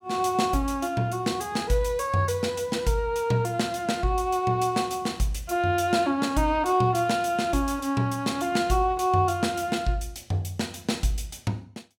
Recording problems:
none

